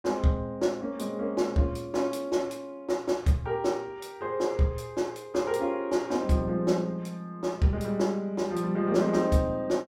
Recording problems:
none

